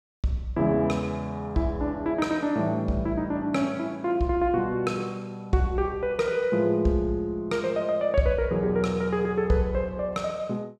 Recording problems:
none

